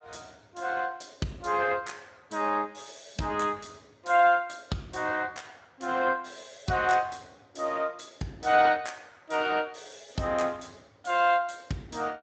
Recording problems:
codec artefacts; Speex, log-spectral distance 7 dB, nothing above 7.8 kHz

